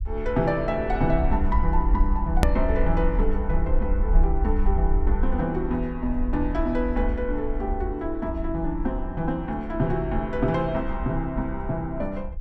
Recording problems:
low-frequency rumble; below 56 Hz, SNR 2 dB
click at an edit; at 2.5 s

